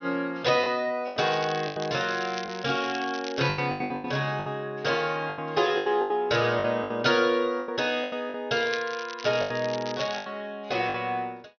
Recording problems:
treble missing; nothing above 6.1 kHz
packet loss; 11% of the sound replaced, filled with the last packet
crackling; from 1 to 3.5 s and from 8.5 to 10 s; loose cable, SNR 13 dB

